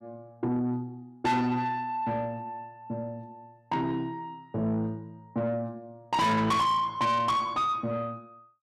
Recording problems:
distortion; soft clipping, signal-to-distortion ratio 7 dB

